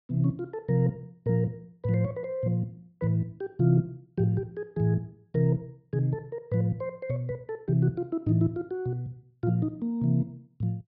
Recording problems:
treble cut off; nothing above 5.5 kHz

